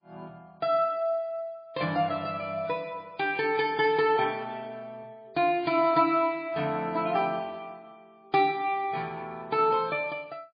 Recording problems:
lossy codec; MP3, log-spectral distance 2 dB, nothing above 4.4 kHz

